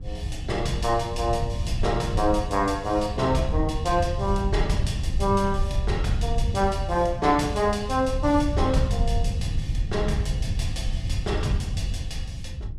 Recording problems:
wind noise; below 100 Hz, SNR 3 dB

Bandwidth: 13.5 kHz